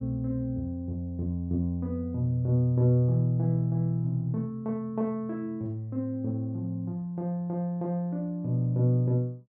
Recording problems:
none

